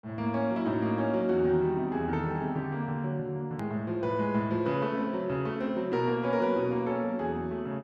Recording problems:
click at an edit; at 3.5 s

